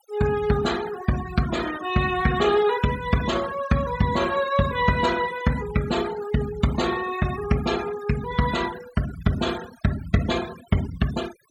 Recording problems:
noise reduction artefacts; signal-to-artefact ratio 14 dB

